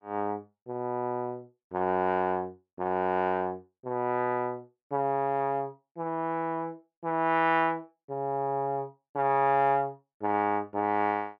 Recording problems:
none

